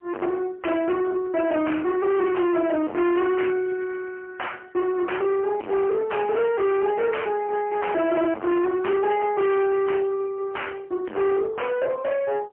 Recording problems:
phone line; 190 Hz to 3.1 kHz, AMR-NB, then MP3
distorted audio; soft clipping, signal-to-distortion ratio 4 dB

